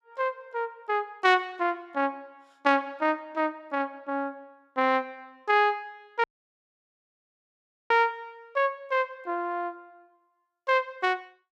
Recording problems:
dropout; at 6 s for 1.5 s

